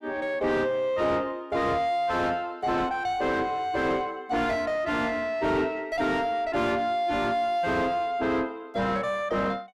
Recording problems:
distortion; soft clipping, signal-to-distortion ratio 6 dB

